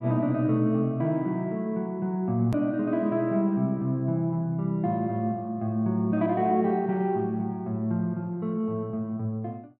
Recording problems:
click at an edit; at 2.5 s

